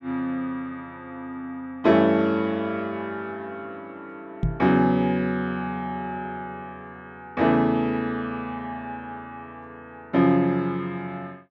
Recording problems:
knock on the microphone; at 4.5 s; peak +3 dB vs average level

